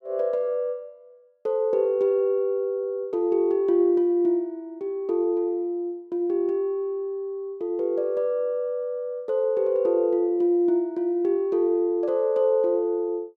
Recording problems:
none

